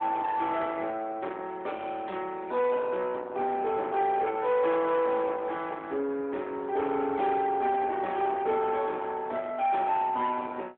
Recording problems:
telephone audio; 260 Hz to 3.6 kHz, AMR-NB
distorted audio; soft clipping, signal-to-distortion ratio 12 dB

